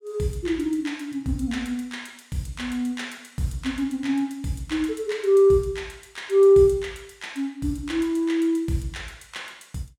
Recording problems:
none

